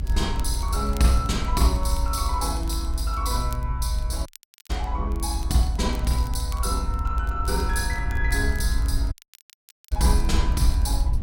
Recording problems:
low-frequency rumble; below 70 Hz, strongest tone 52 Hz, SNR 0 dB
crackle; vinyl, SNR 22 dB
audio cutting out; at 4.5 s and at 9 s for 1 s

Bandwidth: 16.5 kHz